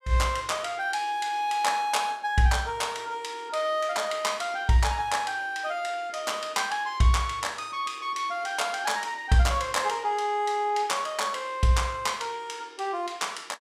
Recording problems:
none

